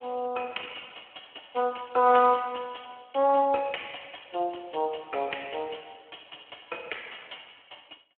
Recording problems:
telephone audio; 300 Hz to 3.2 kHz, Speex

